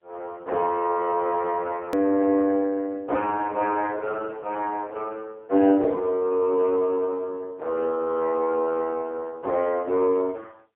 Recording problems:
telephone audio; 260 Hz to 2.7 kHz, AMR-NB, then MP3
edit click; at 2 s

